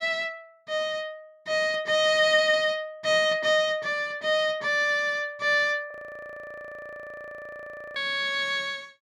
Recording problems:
frozen audio; at 6 s for 2 s

